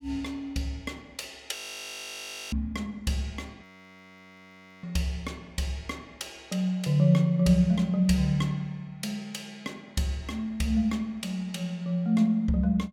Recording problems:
frozen audio; at 1.5 s for 1 s and at 3.5 s for 1 s

